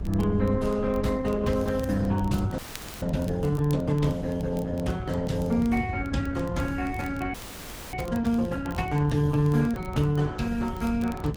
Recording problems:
codec artefacts; Opus, log-spectral distance 2 dB, nothing above 18.5 kHz
hum; 60 Hz, harmonics up to 540 Hz, SNR 23 dB
rumble; below 100 Hz, SNR 6 dB
crackling; vinyl, SNR 24 dB
audio freezing; at 2.5 s and at 7.5 s for 0.5 s

